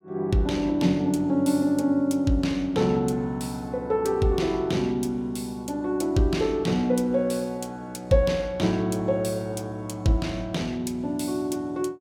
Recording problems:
none

